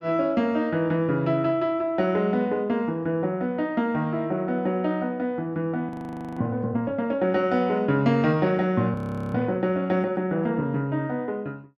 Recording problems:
frozen audio; at 6 s and at 9 s

